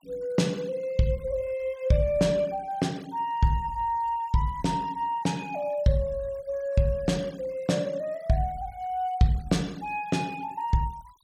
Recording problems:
noise reduction artefacts; signal-to-artefact ratio 25 dB

